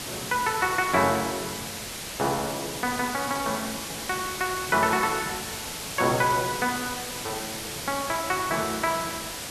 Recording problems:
hiss; slope -1 dB per octave, SNR 6 dB

